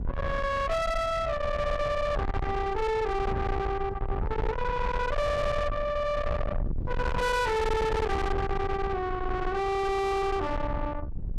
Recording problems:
distorted audio; soft clipping, signal-to-distortion ratio 6 dB
low-frequency rumble; below 620 Hz, SNR 4 dB

